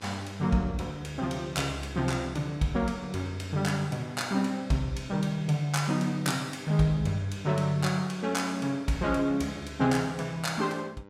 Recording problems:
hum; 50 Hz, harmonics up to 2.4 kHz, SNR 20 dB

